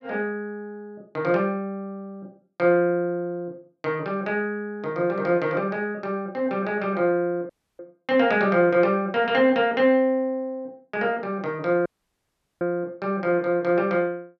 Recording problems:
dropout; at 7.5 s and at 12 s for 1 s

